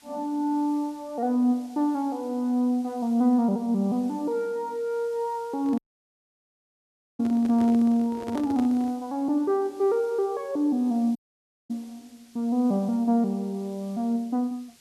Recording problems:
hiss; SNR 28 dB
microphone handling noise; from 5.5 to 9 s; peak -7 dB vs average level
dropout; at 6 s for 1.5 s and at 11 s for 0.5 s

